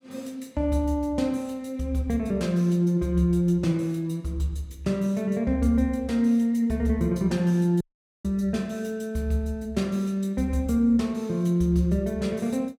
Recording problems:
audio cutting out; at 8 s

